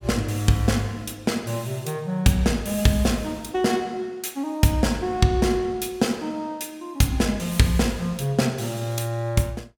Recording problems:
none

